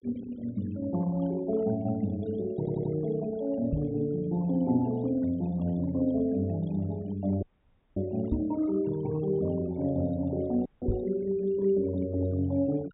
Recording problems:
low-pass filter; nothing above 4 kHz
noise reduction artefacts; signal-to-artefact ratio 21 dB
audio stuttering; at 2.5 s
microphone thump; at 3.5 s, at 8.5 s and at 11 s; peak +3 dB vs average level
dropout; at 7.5 s for 0.5 s and at 11 s

